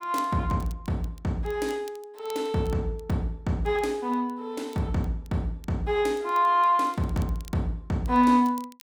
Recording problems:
crackling; vinyl, SNR 26 dB

